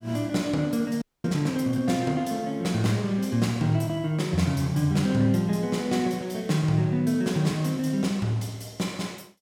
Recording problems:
frozen audio; at 1 s

